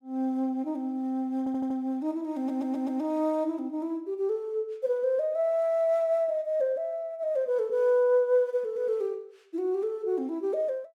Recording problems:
audio stuttering; at 1.5 s and at 2.5 s

